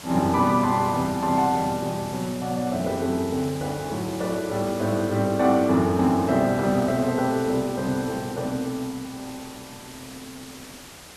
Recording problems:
background hiss; slope -2 dB per octave, SNR 16 dB

